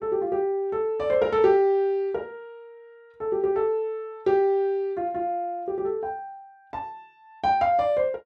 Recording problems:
none

